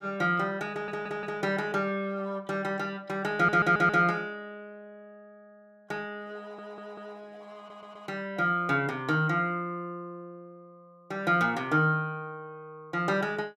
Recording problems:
stutter; 4 times, first at 0.5 s

